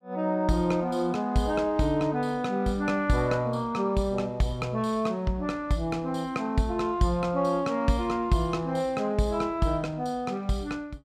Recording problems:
none

